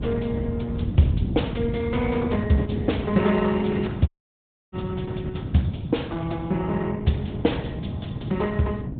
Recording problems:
treble cut off; nothing above 3.8 kHz
lossy codec; Opus, log-spectral distance 3 dB
low-frequency rumble; below 180 Hz, SNR 5 dB
dropout; at 4 s for 0.5 s

